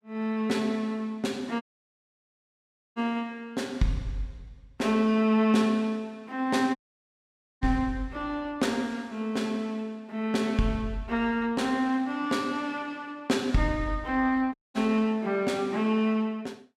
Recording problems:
dropout; at 1.5 s for 1.5 s, at 7 s for 1 s and at 15 s

